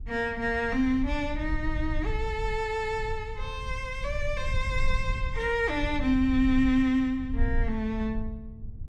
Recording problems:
low-frequency rumble; below 66 Hz, SNR 7 dB

